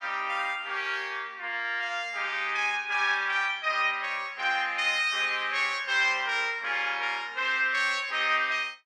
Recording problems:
none

